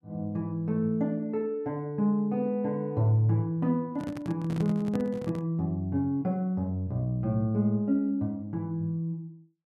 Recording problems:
handling noise; from 4 to 5.5 s; peak -3 dB vs average level

